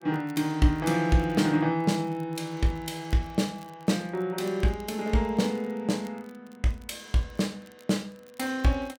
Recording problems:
crackling; vinyl, SNR 30 dB

